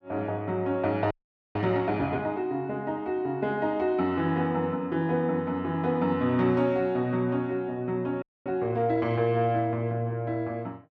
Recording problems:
frozen audio; at 1 s and at 8 s

